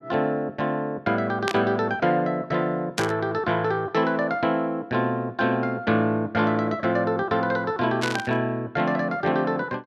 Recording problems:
static burst; at 1.5 s, at 3 s and at 8 s; peak +1 dB vs average level

